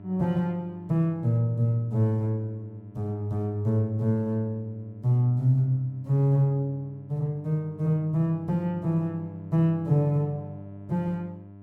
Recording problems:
electrical hum; 50 Hz, harmonics up to 1 kHz, SNR 18 dB

